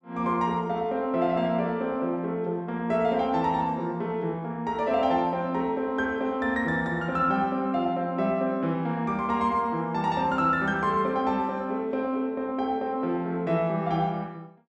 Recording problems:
none

